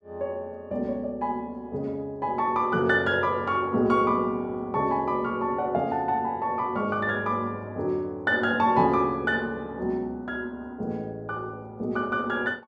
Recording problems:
none

